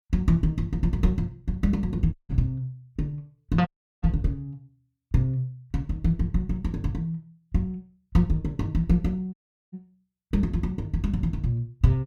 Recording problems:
audio cutting out; at 2 s, at 3.5 s and at 9.5 s

